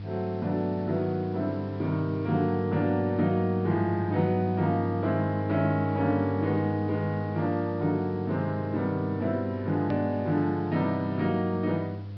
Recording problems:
low-pass filter; nothing above 5.5 kHz
mains hum; 50 Hz, harmonics up to 500 Hz, SNR 7 dB
background hiss; SNR 27 dB
click at an edit; at 10 s

